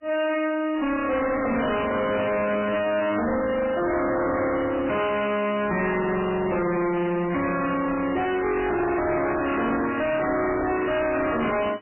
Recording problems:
codec artefacts; MP3, log-spectral distance 6 dB, nothing above 2.7 kHz
distortion; hard clipping, signal-to-distortion ratio 5 dB

